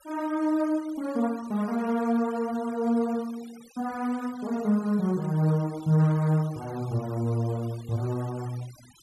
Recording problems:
denoising artefacts; signal-to-artefact ratio 23 dB

